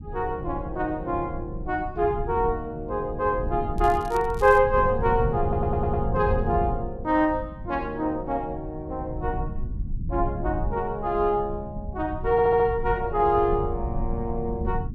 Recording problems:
low-frequency rumble; below 130 Hz, SNR 8 dB
crackling; at 4 s; loose cable, SNR 23 dB
audio stuttering; at 5.5 s and at 12 s

